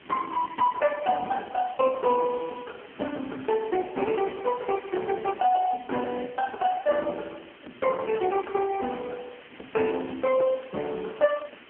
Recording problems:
phone line; 220 Hz to 2.6 kHz, AMR-NB
hiss; SNR 21 dB

